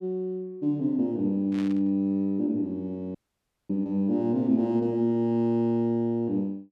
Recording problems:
burst of static; at 1.5 s; peak -12 dB vs average level
audio cutting out; at 3 s for 0.5 s

